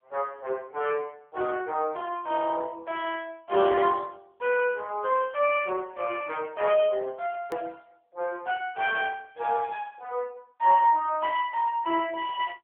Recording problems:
phone line; 320 Hz to 3.1 kHz, AMR-NB
edit click; at 7.5 s

